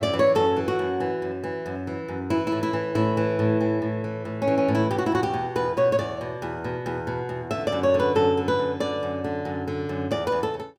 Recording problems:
none

